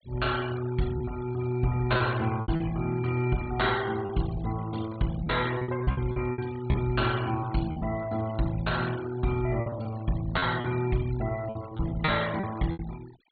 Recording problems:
treble missing; nothing above 4.4 kHz
denoising artefacts; signal-to-artefact ratio 17 dB
lost packets; 8% of the sound replaced, filled with repeated pitch periods

